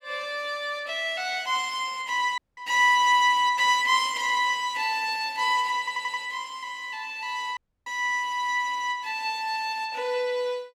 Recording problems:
audio cutting out; at 2.5 s and at 7.5 s
audio stuttering; at 6 s

